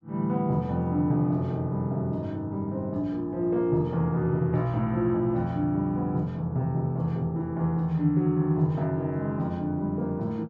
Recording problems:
none

